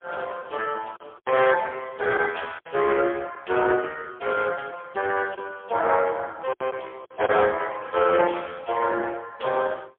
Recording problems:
telephone audio; 320 Hz to 3.3 kHz, AMR-NB, then MP3
lost packets; 4% of the sound replaced, filled with silence

